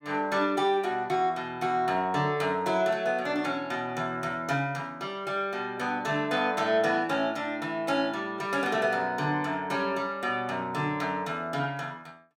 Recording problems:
none

